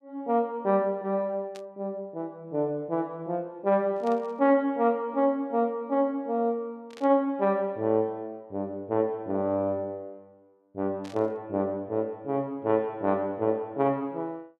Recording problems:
burst of static; 4 times, first at 1.5 s; peak -14 dB vs average level

